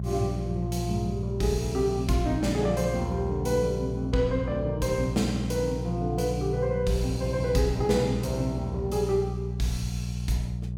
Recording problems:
hum; 60 Hz, harmonics up to 420 Hz, SNR 4 dB

